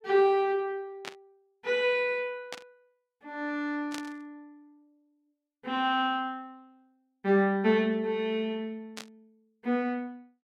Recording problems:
static burst; 4 times, first at 1 s; peak -6 dB vs average level

